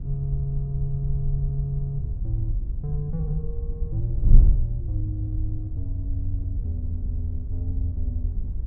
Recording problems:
wind on the microphone; below 64 Hz, SNR -2 dB

